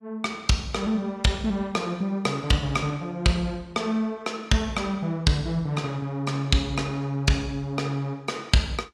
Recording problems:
lossy compression; AAC, log-spectral distance 2 dB

